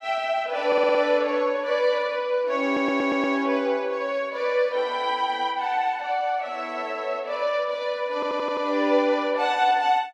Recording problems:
audio stuttering; at 0.5 s, at 2.5 s and at 8 s

